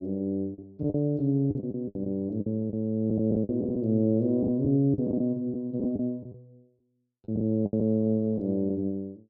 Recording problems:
packet loss; 11% of the sound replaced, filled with the last packet

